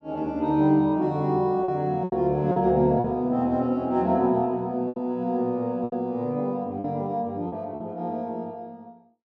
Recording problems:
lost packets; 5% of the sound replaced, filled with repeated pitch periods

